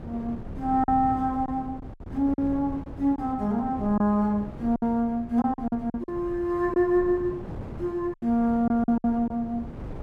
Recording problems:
wind noise; below 300 Hz, SNR 14 dB
lost packets; 8% of the sound replaced, filled with silence

